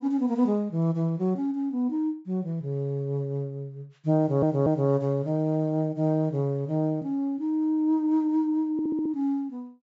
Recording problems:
treble missing; nothing above 8 kHz
stutter; at 4 s and at 8.5 s

